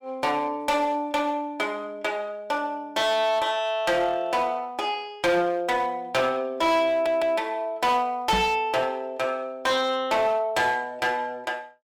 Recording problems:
distorted audio; hard clipping, uneven, signal-to-distortion ratio 12 dB
stutter; at 7 s
knock on the microphone; at 8.5 s; peak 0 dB vs average level

